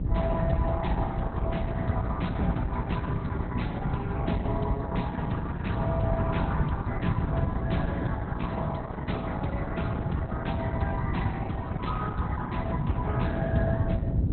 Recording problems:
lossy compression; Opus, log-spectral distance 2 dB, nothing above 4.1 kHz
mains hum; 60 Hz, harmonics up to 720 Hz, SNR 6 dB
low-frequency rumble; below 120 Hz, SNR -5 dB

